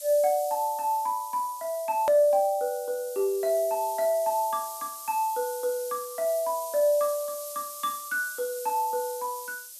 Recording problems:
background hiss; SNR 12 dB
edit click; at 2 s

